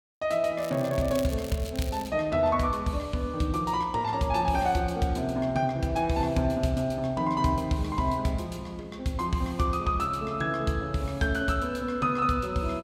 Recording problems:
crackle; from 0.5 to 2 s; loose cable, SNR 16 dB

